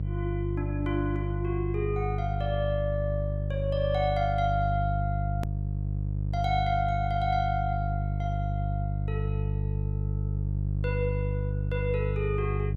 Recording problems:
hum; 50 Hz, harmonics up to 350 Hz, SNR -1 dB
click at an edit; at 5.5 s

